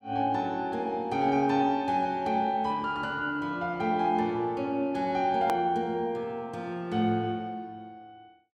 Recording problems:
click at an edit; at 5.5 s

